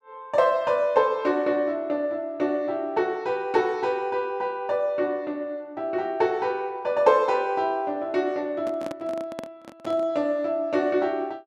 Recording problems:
handling noise; from 8.5 to 10 s; peak -6 dB vs average level

